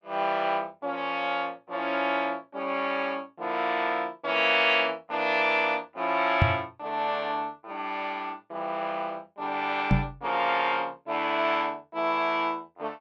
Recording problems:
knock on the microphone; at 6.5 s and at 10 s; peak +8 dB vs average level

